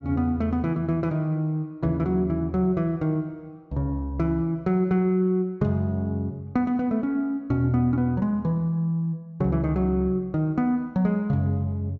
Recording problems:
none

